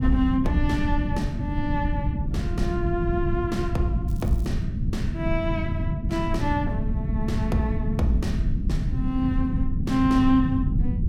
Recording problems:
rumble; below 160 Hz, SNR 0 dB
crackling; at 4 s; loose cable, SNR 24 dB

